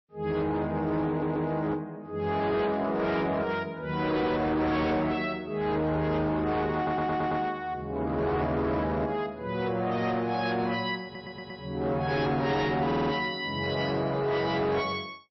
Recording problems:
codec artefacts; MP3, log-spectral distance 2 dB, nothing above 4.9 kHz
distortion; hard clipping, signal-to-distortion ratio 11 dB
stutter; 4 times, first at 1 s

